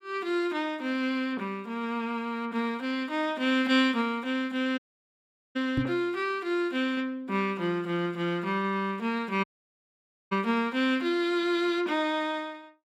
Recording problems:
dropout; at 5 s for 1 s and at 9.5 s for 1 s
microphone thump; at 6 s; peak +3 dB vs average level

